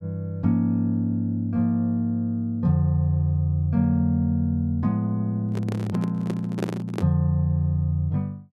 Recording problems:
microphone handling noise; from 5.5 to 7 s; peak 0 dB vs average level

